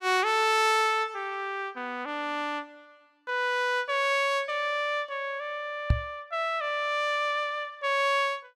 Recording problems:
knock on the microphone; at 6 s; peak +7 dB vs average level

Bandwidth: 16 kHz